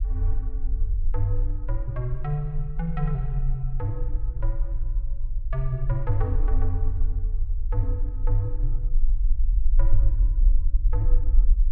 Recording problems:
treble cut off; nothing above 5.8 kHz
low-frequency rumble; below 42 Hz, strongest tone 20 Hz, SNR -4 dB

